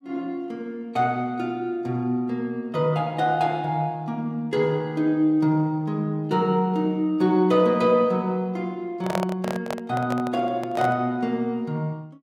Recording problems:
handling noise; from 9 to 11 s; peak +1 dB vs average level

